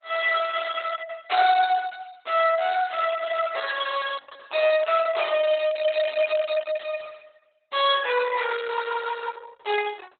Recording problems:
lossy compression; Opus, log-spectral distance 5 dB, nothing above 3.8 kHz

